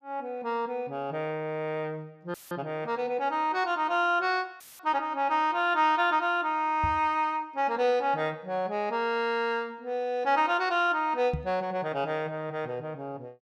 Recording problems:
audio cutting out; at 2.5 s and at 4.5 s; filled with static
microphone bump; at 7 s and at 11 s; peak 0 dB vs average level

